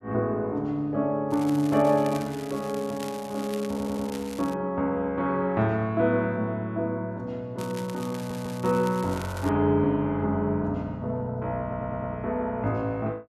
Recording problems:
crackle; from 1.5 to 4.5 s and from 7.5 to 9.5 s; loose cable, SNR 17 dB
stutter; at 3.5 s, at 8 s and at 12 s

